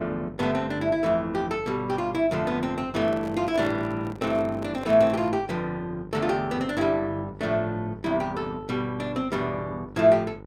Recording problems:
hum; 50 Hz, harmonics up to 1.5 kHz, SNR 18 dB
handling noise; from 3 to 5.5 s; peak -7 dB vs average level

